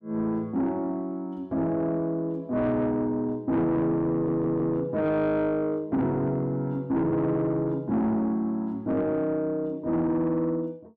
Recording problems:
distorted audio; soft clipping, signal-to-distortion ratio 11 dB
audio stuttering; at 4 s

